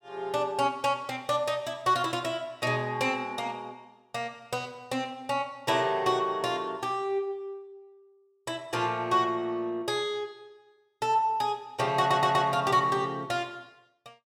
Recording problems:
audio stuttering; at 12 s

